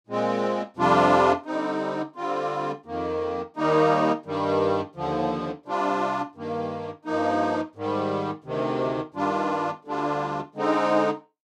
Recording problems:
none

